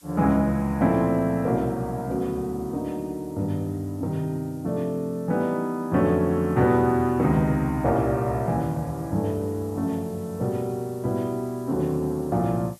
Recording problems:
hiss; slope +1 dB per octave, SNR 27 dB

